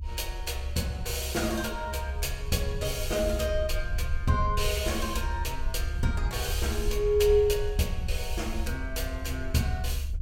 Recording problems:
rumble; below 70 Hz, SNR 5 dB

